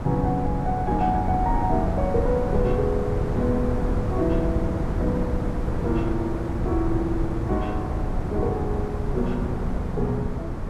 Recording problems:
wind on the microphone; below 230 Hz, SNR 1 dB

